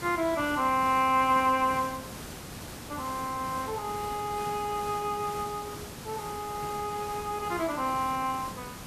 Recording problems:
background hiss; slope -4 dB per octave, SNR 11 dB

